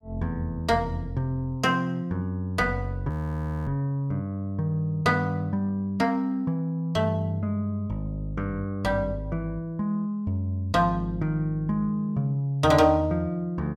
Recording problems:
audio freezing; at 3 s for 0.5 s

